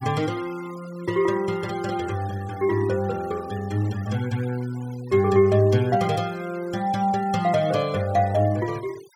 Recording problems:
noise reduction artefacts; signal-to-artefact ratio 21 dB

